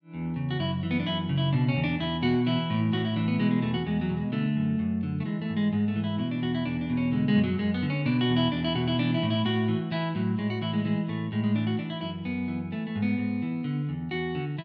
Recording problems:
none

